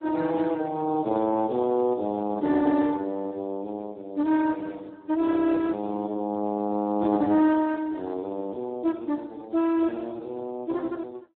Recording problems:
phone line; 170 Hz to 2.2 kHz, Speex

